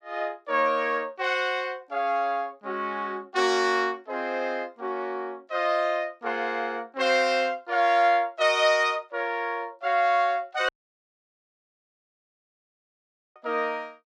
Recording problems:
dropout; at 11 s for 2.5 s

